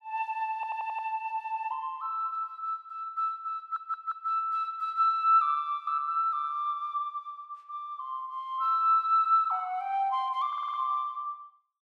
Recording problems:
audio stuttering; at 0.5 s, at 3.5 s and at 10 s

